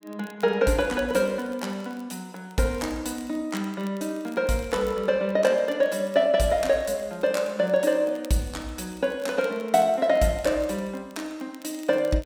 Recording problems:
crackle; vinyl, SNR 27 dB

